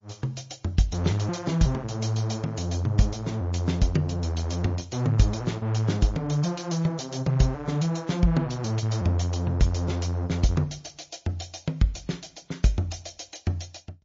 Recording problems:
low-pass filter; nothing above 6.9 kHz
lossy codec; MP3, log-spectral distance 4 dB

